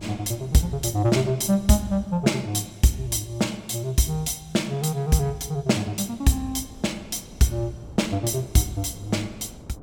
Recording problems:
wind noise; below 340 Hz, SNR 22 dB

